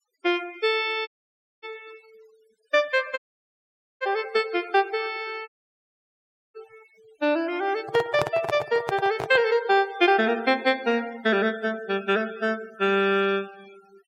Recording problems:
denoising artefacts; signal-to-artefact ratio 22 dB
dropout; at 1 s for 0.5 s, at 3 s for 1 s and at 5.5 s for 1 s
handling noise; from 8 to 9.5 s; peak 0 dB vs average level

